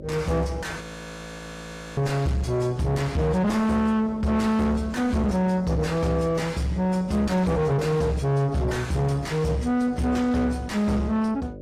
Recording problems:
lossy codec; AAC, log-spectral distance 2 dB, nothing above 17.1 kHz
distorted audio; soft clipping, signal-to-distortion ratio 6 dB
hum; 50 Hz, harmonics up to 650 Hz, SNR 20 dB
frozen audio; at 1 s for 1 s

